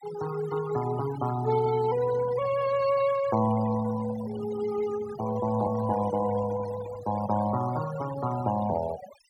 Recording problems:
noise reduction artefacts; signal-to-artefact ratio 13 dB

